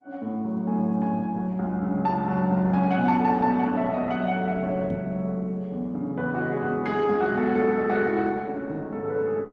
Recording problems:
codec artefacts; Opus, log-spectral distance 2 dB
microphone bump; at 5 s; peak -1 dB vs average level

